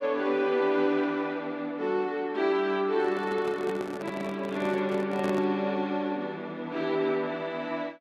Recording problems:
microphone handling noise; from 3 to 5.5 s; peak -3 dB vs average level

